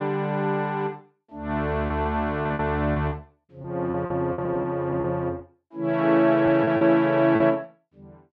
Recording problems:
lost packets; 8% of the sound replaced, filled with repeated pitch periods

